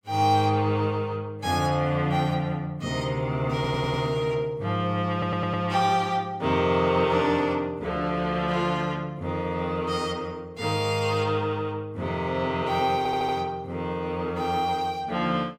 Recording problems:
stutter; at 3.5 s, at 5 s and at 13 s

